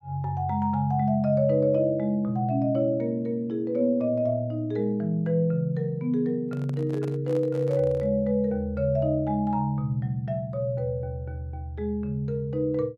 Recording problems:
handling noise; from 6.5 to 8 s; peak -9 dB vs average level

